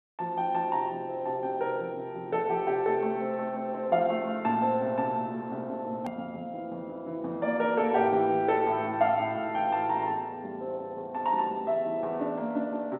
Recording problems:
phone line; 130 Hz to 3.6 kHz, G.711
click at an edit; at 6 s

